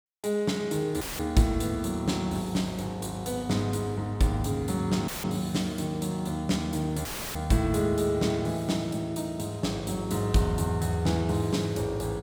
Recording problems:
dropout; at 1 s, at 5 s and at 7 s; filled with static

